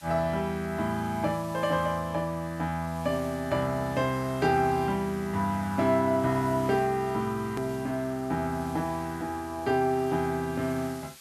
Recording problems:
background hiss; slope +2 dB per octave, SNR 21 dB
click at an edit; at 7.5 s

